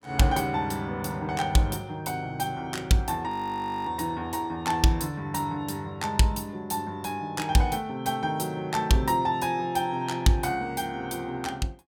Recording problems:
audio freezing; at 3.5 s for 0.5 s

